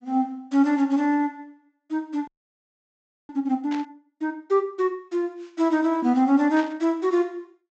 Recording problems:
treble missing; nothing above 8 kHz
frozen audio; at 2.5 s for 1 s
burst of static; at 3.5 s and at 6.5 s; peak -10 dB vs average level

